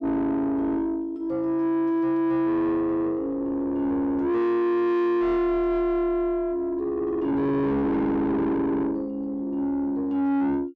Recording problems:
distortion; soft clipping, signal-to-distortion ratio 6 dB

